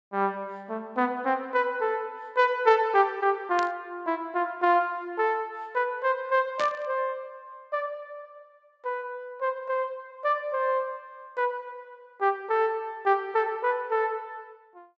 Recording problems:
low-pass filter; nothing above 8 kHz
static burst; at 3.5 s and at 6.5 s; peak -3 dB vs average level

